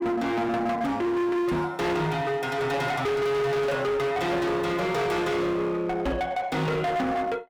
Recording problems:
distortion; hard clipping, uneven, signal-to-distortion ratio 7 dB
knock on the microphone; at 1.5 s and at 6 s; peak +3 dB vs average level

